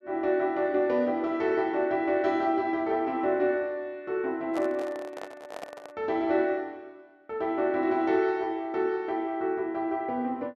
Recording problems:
handling noise; from 4.5 to 6 s; peak -6 dB vs average level

